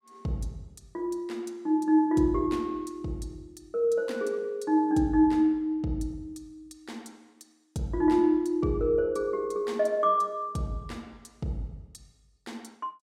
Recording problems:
none

